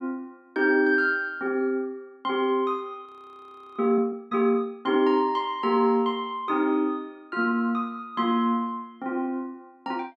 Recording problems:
audio freezing; at 3 s for 0.5 s

